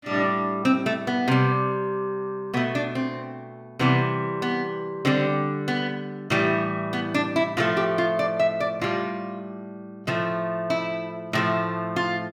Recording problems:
none

